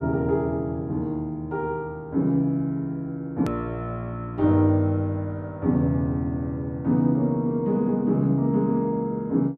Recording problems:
edit click; at 3.5 s

